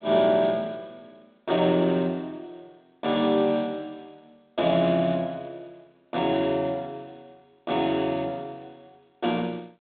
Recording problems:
telephone audio; 190 Hz to 3.8 kHz, G.726

